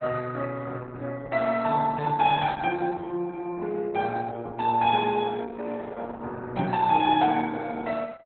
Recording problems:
lossy codec; Opus, log-spectral distance 3 dB, nothing above 3.4 kHz
microphone bump; at 6.5 s; peak 0 dB vs average level

